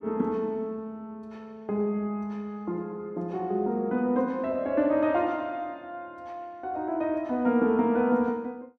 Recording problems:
none

